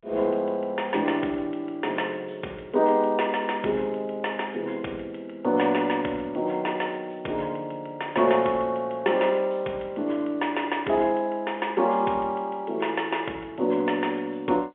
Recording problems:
phone line; 300 Hz to 3.4 kHz, G.711

